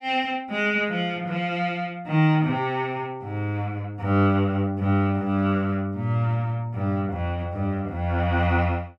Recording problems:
none

